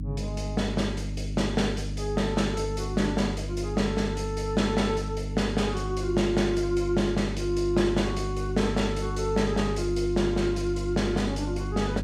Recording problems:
hum; 50 Hz, harmonics up to 300 Hz, SNR 5 dB

